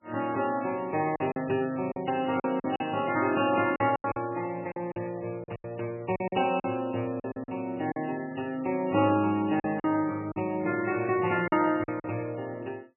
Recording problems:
codec artefacts; MP3, log-spectral distance 3 dB, nothing above 2.9 kHz
packet loss; 9% of the sound replaced, filled with silence
static burst; at 4 s and at 9 s; peak -10 dB vs average level

